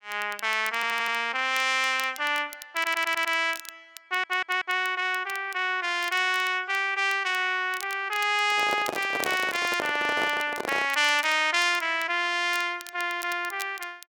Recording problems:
crackle; vinyl, SNR 18 dB
stutter; at 1 s, at 2.5 s and at 4 s
handling noise; from 8.5 to 11 s; peak -2 dB vs average level

